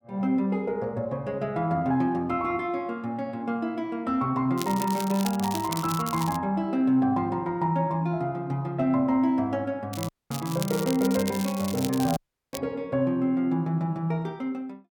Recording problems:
crackle; from 4.5 to 6.5 s and from 10 to 13 s; loose cable, SNR 11 dB
audio cutting out; at 10 s and at 12 s

